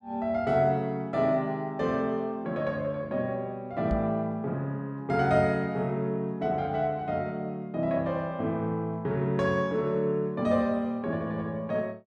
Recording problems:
knock on the microphone; at 4 s; peak 0 dB vs average level

